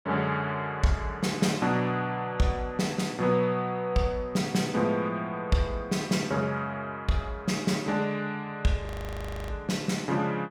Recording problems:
frozen audio; at 9 s for 0.5 s

